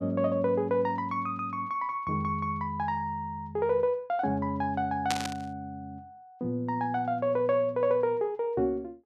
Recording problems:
static burst; at 5 s; peak +3 dB vs average level

